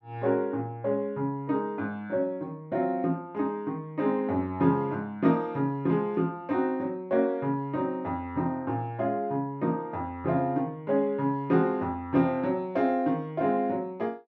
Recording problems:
none

